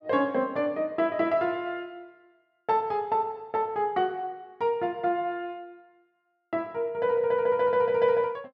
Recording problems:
none

